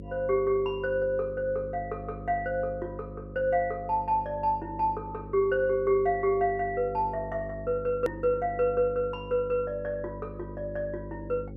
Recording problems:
electrical hum; 50 Hz, harmonics up to 550 Hz, SNR 13 dB
click at an edit; at 8 s

